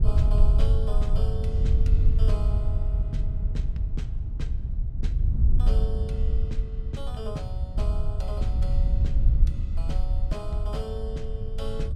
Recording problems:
wind noise; below 70 Hz, SNR -12 dB

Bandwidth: 16 kHz